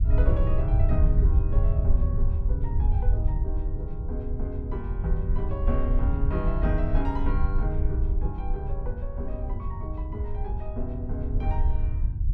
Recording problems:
rumble; below 72 Hz, SNR -7 dB

